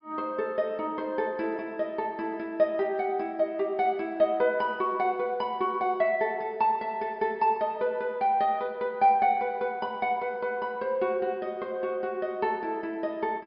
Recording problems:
treble missing; nothing above 5.5 kHz

